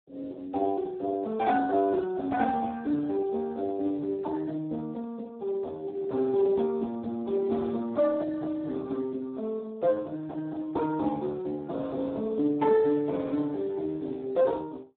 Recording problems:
phone line; 170 Hz to 2.2 kHz, Speex

